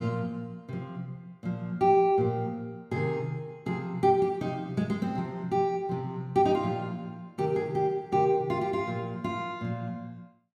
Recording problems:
none

